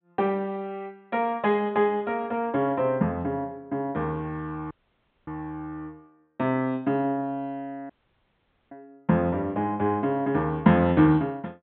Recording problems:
treble cut off; nothing above 4 kHz
dropout; at 4.5 s for 0.5 s and at 8 s for 1 s

